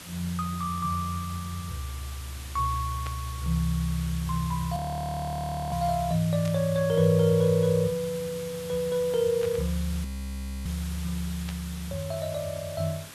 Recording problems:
hiss; slope -1 dB per octave, SNR 14 dB
burst of static; 4 times, first at 3 s; peak -8 dB vs average level
frozen audio; at 5 s for 1 s and at 10 s for 0.5 s

